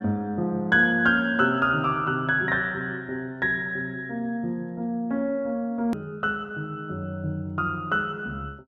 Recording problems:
click at an edit; at 6 s

